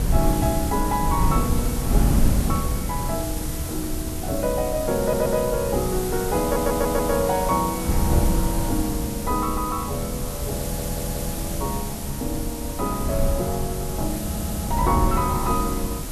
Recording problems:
hiss; SNR 7 dB
wind on the microphone; below 140 Hz, SNR 2 dB
audio stuttering; 4 times, first at 5 s

